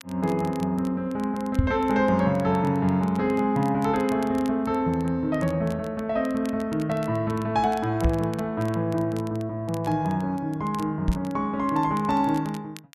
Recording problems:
crackle; vinyl, SNR 24 dB
microphone bump; at 1.5 s, at 8 s and at 11 s; peak +7 dB vs average level

